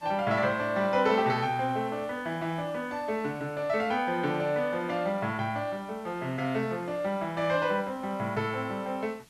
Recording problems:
hiss; SNR 27 dB

